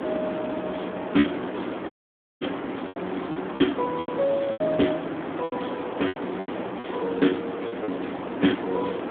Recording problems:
telephone audio; 220 Hz to 3.4 kHz, Speex
background hiss; SNR 4 dB
wind on the microphone; below 550 Hz, SNR 20 dB
lost packets; 9% of the sound replaced, filled with repeated pitch periods
dropout; at 2 s for 0.5 s

